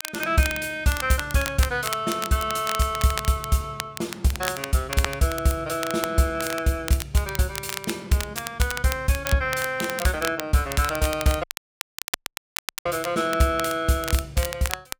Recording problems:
crackling; vinyl, SNR 9 dB
audio cutting out; at 11 s for 1.5 s

